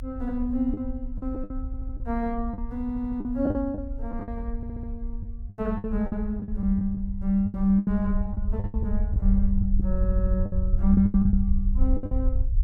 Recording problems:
low-frequency rumble; below 68 Hz, SNR 3 dB
packet loss; 12% of the sound replaced, filled with the last packet
stutter; 4 times, first at 1.5 s

